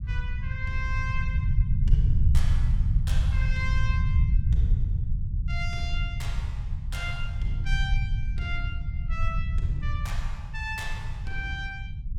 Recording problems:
rumble; below 92 Hz, SNR -8 dB

